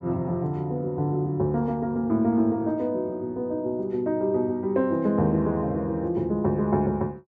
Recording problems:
none

